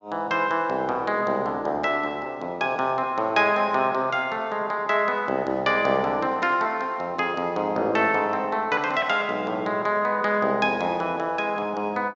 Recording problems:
treble missing; nothing above 8 kHz

